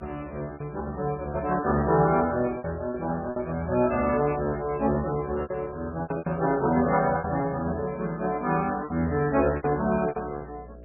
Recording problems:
codec artefacts; MP3, log-spectral distance 3 dB, nothing above 2.5 kHz
hum; 60 Hz, harmonics up to 660 Hz, SNR 22 dB
packet loss; 9% of the sound replaced, filled with repeated pitch periods

